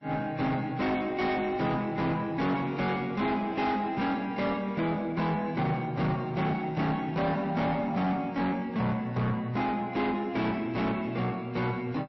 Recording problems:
lossy compression; MP3, log-spectral distance 2 dB, nothing above 5.7 kHz
distortion; soft clipping, signal-to-distortion ratio 6 dB

